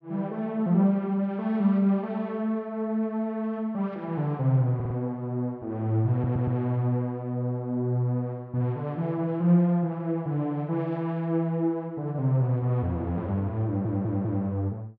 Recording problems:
audio stuttering; at 5 s, at 6 s and at 14 s

